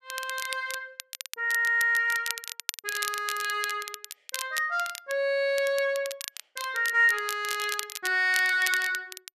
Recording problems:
crackling; vinyl, SNR 10 dB

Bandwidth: 14 kHz